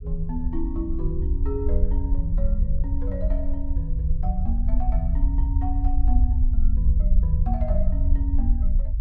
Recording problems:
rumble; below 64 Hz, SNR -8 dB

